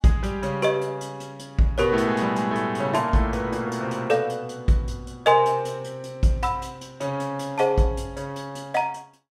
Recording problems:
none

